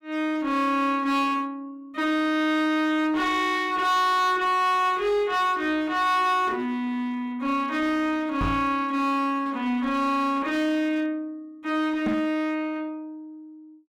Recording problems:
distorted audio; hard clipping, uneven, signal-to-distortion ratio 10 dB
microphone bump; at 8.5 s and at 12 s; peak +1 dB vs average level

